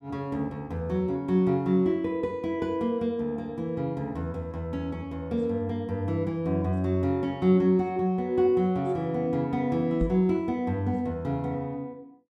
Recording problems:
microphone thump; at 10 s; peak +1 dB vs average level

